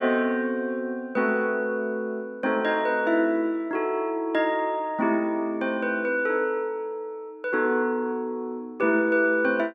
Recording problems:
none

